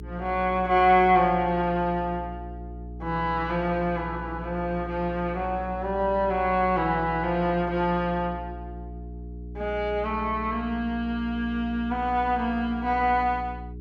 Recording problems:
electrical hum; 60 Hz, harmonics up to 420 Hz, SNR 13 dB

